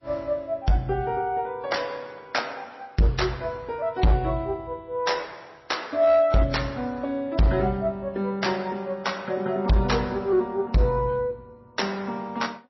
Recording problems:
lossy compression; AAC, then MP3, log-spectral distance 3 dB, nothing above 5.8 kHz
distorted audio; hard clipping, signal-to-distortion ratio 10 dB

